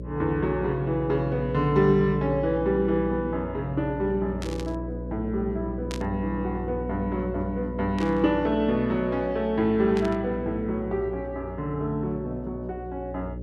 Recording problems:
electrical hum; 60 Hz, harmonics up to 600 Hz, SNR 10 dB
burst of static; 4 times, first at 4.5 s; peak -7 dB vs average level

